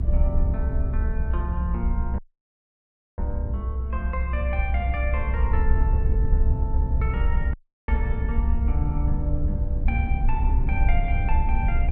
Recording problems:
low-frequency rumble; below 66 Hz, SNR -7 dB
dropout; at 2 s for 1 s and at 7.5 s

